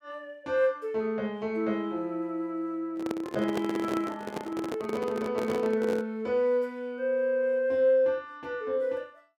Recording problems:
microphone handling noise; from 3 to 6 s; peak +1 dB vs average level

